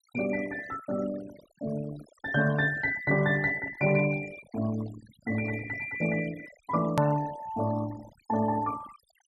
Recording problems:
denoising artefacts; signal-to-artefact ratio 16 dB
hard cut with a click; at 7 s

